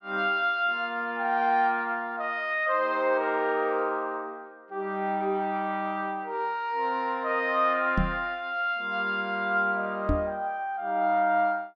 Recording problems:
microphone bump; at 8 s and at 10 s; peak +3 dB vs average level

